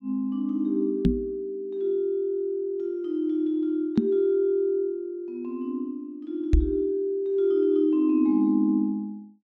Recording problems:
microphone bump; at 1 s, at 4 s and at 6.5 s; peak +9 dB vs average level

